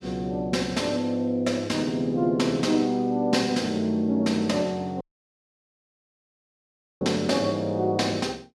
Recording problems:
dropout; at 5 s for 2 s

